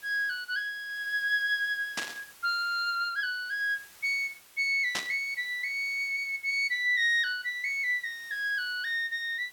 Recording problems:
background hiss; slope 0 dB per octave, SNR 24 dB
burst of static; at 2 s and at 5 s; peak +1 dB vs average level

